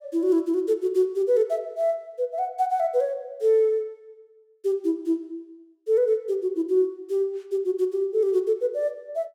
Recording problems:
none

